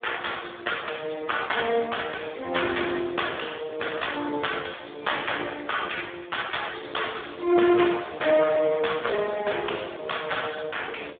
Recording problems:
phone line; 300 Hz to 3.6 kHz, Speex

